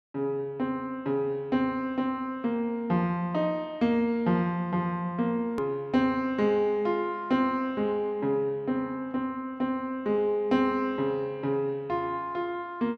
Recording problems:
click at an edit; at 5.5 s

